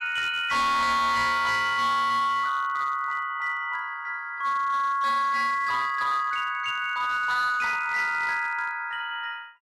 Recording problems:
distortion; hard clipping, signal-to-distortion ratio 12 dB

